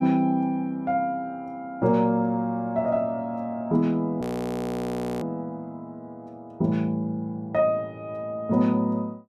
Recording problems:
audio freezing; at 4 s for 1 s

